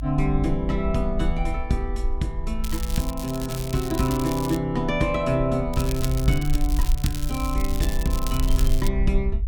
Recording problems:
rumble; below 52 Hz, SNR 3 dB
crackle; from 2.5 to 4.5 s and from 5.5 to 9 s; loose cable, SNR 10 dB

